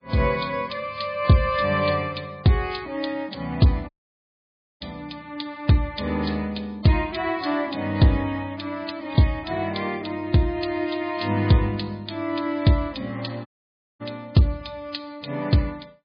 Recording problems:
lossy codec; MP3, log-spectral distance 5 dB, nothing above 4.2 kHz
dropout; at 4 s for 1 s and at 13 s for 0.5 s

